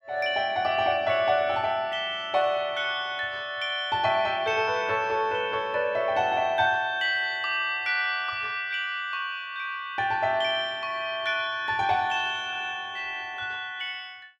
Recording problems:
none

